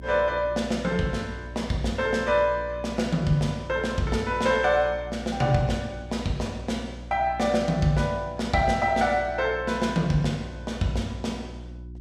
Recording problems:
hum; 60 Hz, harmonics up to 360 Hz, SNR 15 dB

